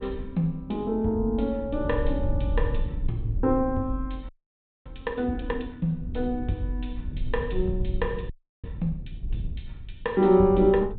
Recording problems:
treble missing; nothing above 4 kHz
rumble; below 74 Hz, SNR 9 dB
frozen audio; at 4.5 s for 0.5 s and at 8.5 s

